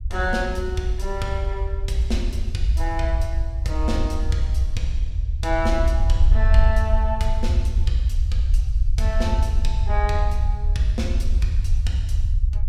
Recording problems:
low-frequency rumble; below 68 Hz, SNR -4 dB

